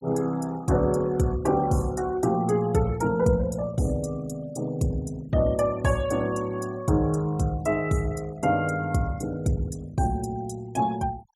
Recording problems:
denoising artefacts; signal-to-artefact ratio 23 dB

